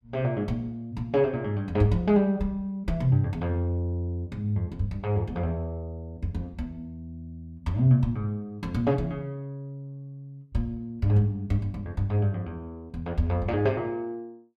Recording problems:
none

